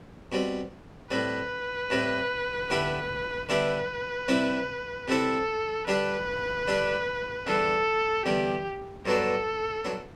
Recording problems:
wind on the microphone; below 630 Hz, SNR 19 dB

